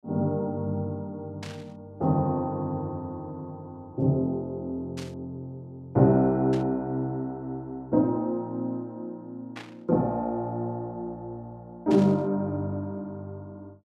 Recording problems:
static burst; 5 times, first at 1.5 s; peak -9 dB vs average level

